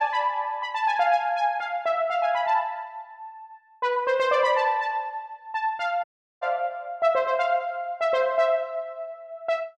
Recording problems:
audio cutting out; at 6 s

